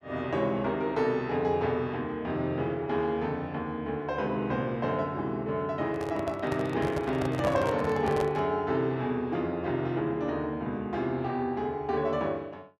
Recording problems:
microphone handling noise; from 6 to 8.5 s; peak -1 dB vs average level

